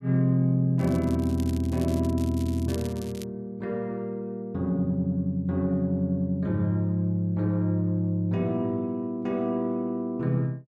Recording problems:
crackle; from 1 to 3 s; loose cable, SNR 20 dB

